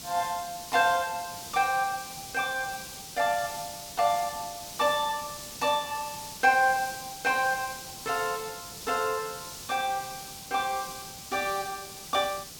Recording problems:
hiss; SNR 10 dB

